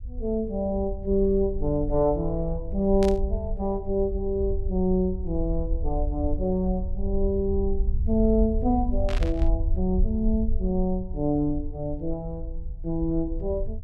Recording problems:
rumble; below 62 Hz, SNR 5 dB
static burst; at 3 s and at 9 s; peak -6 dB vs average level

